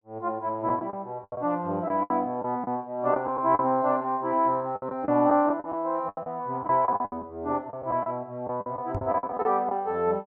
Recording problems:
lost packets; 12% of the sound replaced, filled with the last packet
microphone bump; at 9 s; peak -1 dB vs average level

